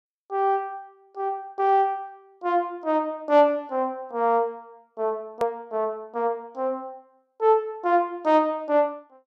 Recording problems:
hard cut with a click; at 5.5 s

